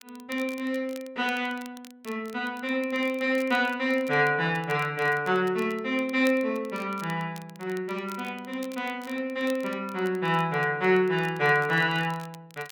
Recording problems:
crackle; vinyl, SNR 23 dB

